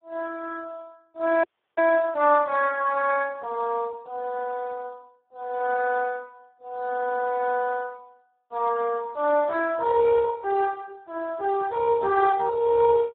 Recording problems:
phone line; 300 Hz to 2.3 kHz, Speex
audio cutting out; at 1.5 s

